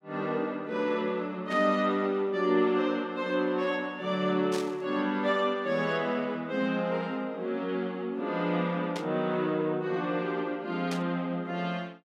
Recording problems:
static burst; 4 times, first at 1.5 s; peak -5 dB vs average level

